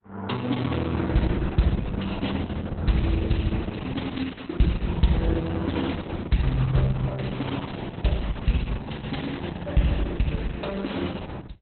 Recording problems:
lossy codec; Opus, log-spectral distance 5 dB, nothing above 4.1 kHz

